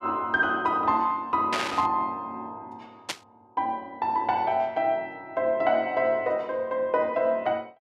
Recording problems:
burst of static; at 1.5 s and at 3 s; peak +1 dB vs average level

